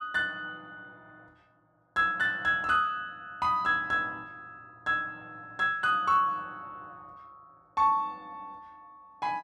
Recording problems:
none

